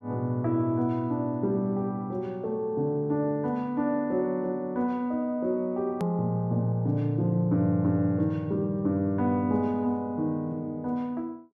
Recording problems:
click at an edit; at 6 s

